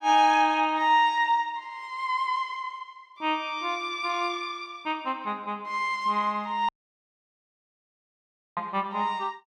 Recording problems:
dropout; at 6.5 s for 2 s

